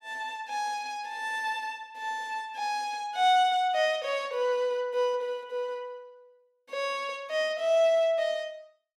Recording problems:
none

